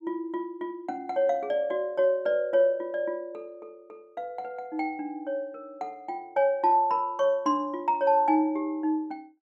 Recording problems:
none

